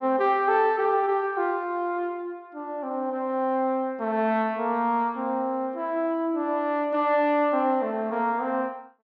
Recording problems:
none

